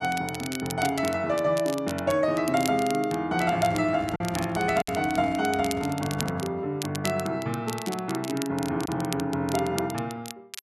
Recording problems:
crackling; vinyl, SNR 12 dB
packet loss; 1.1% of the sound replaced, filled with silence
handling noise; from 3.5 to 6.5 s; peak -7 dB vs average level

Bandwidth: 12.5 kHz